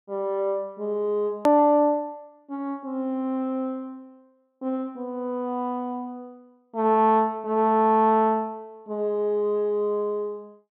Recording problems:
low-pass filter; nothing above 4 kHz
edit click; at 1.5 s

